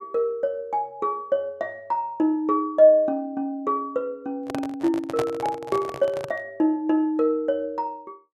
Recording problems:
microphone handling noise; from 4.5 to 6.5 s; peak 0 dB vs average level

